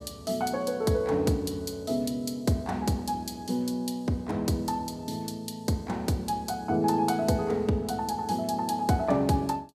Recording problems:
none

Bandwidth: 15 kHz